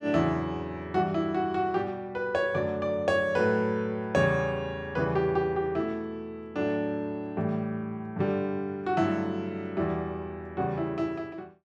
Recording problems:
none

